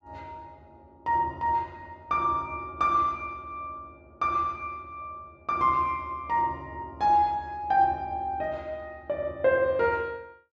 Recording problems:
none

